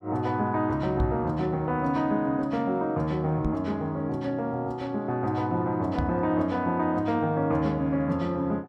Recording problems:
microphone bump; at 1 s, at 3.5 s and at 6 s; peak +3 dB vs average level

